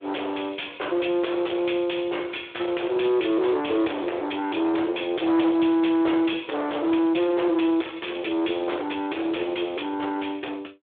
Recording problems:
telephone audio; 300 Hz to 3.6 kHz, Speex
distorted audio; soft clipping, signal-to-distortion ratio 7 dB

